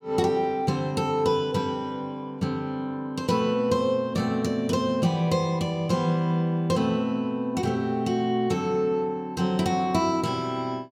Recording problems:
none

